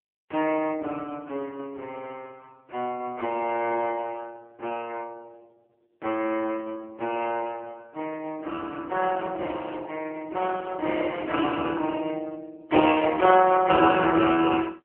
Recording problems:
telephone audio; 280 Hz to 3.2 kHz, AMR-NB

